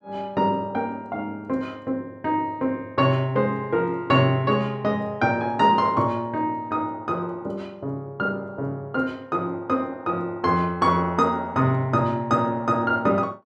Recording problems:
none

